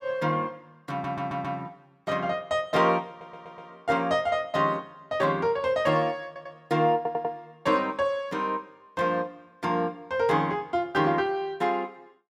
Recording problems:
stutter; 4 times, first at 1 s

